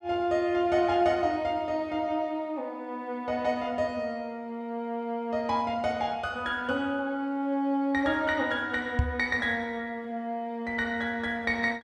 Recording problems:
knock on the microphone; at 9 s; peak +7 dB vs average level

